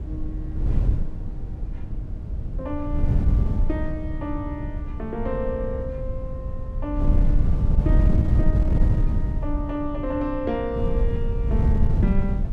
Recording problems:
wind noise; below 96 Hz, SNR -5 dB

